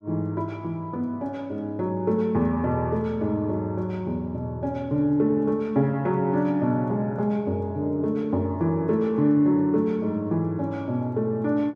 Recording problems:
none

